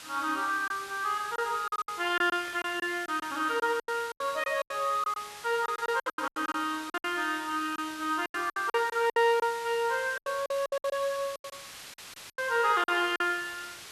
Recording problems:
background hiss; slope +1 dB per octave, SNR 14 dB
lost packets; 14% of the sound replaced, filled with silence
burst of static; at 2.5 s; peak -14 dB vs average level

